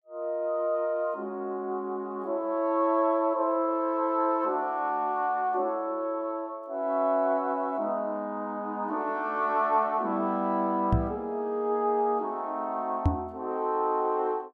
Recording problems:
microphone bump; at 11 s and at 13 s; peak +8 dB vs average level

